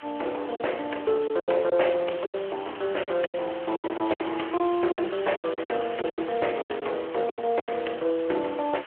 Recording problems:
phone line; 300 Hz to 3.2 kHz, Speex
hiss; SNR 15 dB
lost packets; 13% of the sound replaced, filled with silence

